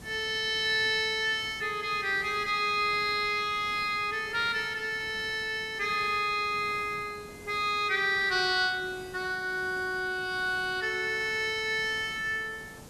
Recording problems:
hiss; SNR 20 dB

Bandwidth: 13.5 kHz